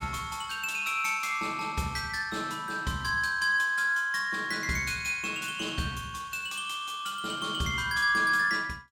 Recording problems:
none

